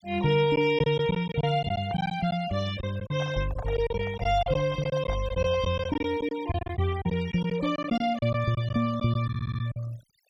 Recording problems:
denoising artefacts; signal-to-artefact ratio 19 dB
packet loss; 10% of the sound replaced, filled with silence
handling noise; from 3 to 6 s; peak -8 dB vs average level
stutter; at 9.5 s

